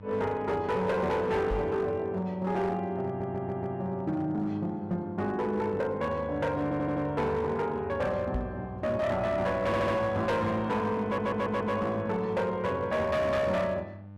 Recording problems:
distorted audio; hard clipping, signal-to-distortion ratio 11 dB
hum; 50 Hz, harmonics up to 1.2 kHz, SNR 18 dB
microphone thump; at 1.5 s and at 8.5 s; peak 0 dB vs average level
stutter; 4 times, first at 3 s

